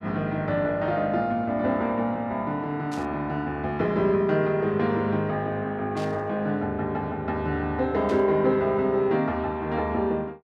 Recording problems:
static burst; at 3 s, at 6 s and at 8 s; peak -12 dB vs average level

